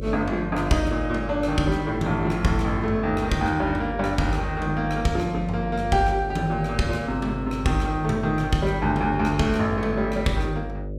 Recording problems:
hum; 50 Hz, harmonics up to 600 Hz, SNR 9 dB

